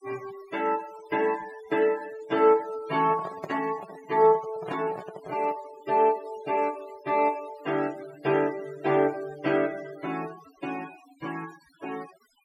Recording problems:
denoising artefacts; signal-to-artefact ratio 19 dB
handling noise; from 3 to 5.5 s; peak -4 dB vs average level

